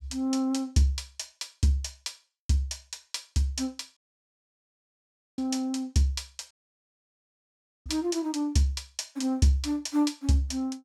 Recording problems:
dropout; at 4 s for 1.5 s and at 6.5 s for 1.5 s

